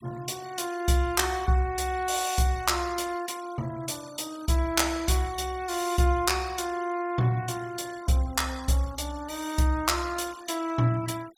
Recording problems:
denoising artefacts; signal-to-artefact ratio 19 dB

